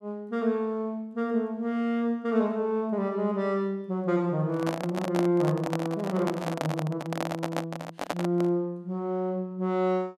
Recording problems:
handling noise; from 4.5 to 8.5 s; peak +2 dB vs average level

